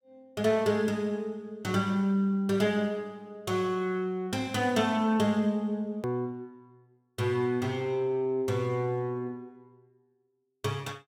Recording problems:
hard cut with a click; at 6 s

